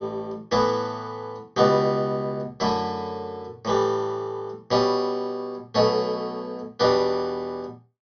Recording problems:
treble cut off; nothing above 6.3 kHz

